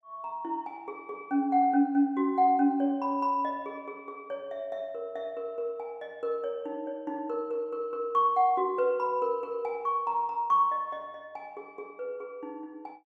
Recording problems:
none

